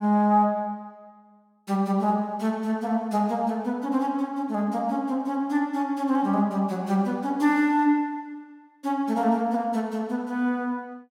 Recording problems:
none

